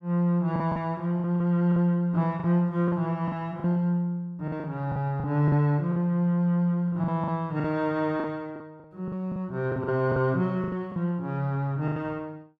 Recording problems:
lost packets; 11% of the sound replaced, filled with the last packet

